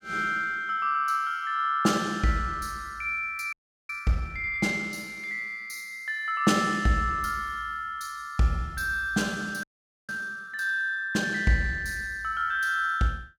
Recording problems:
frozen audio; at 3.5 s and at 9.5 s

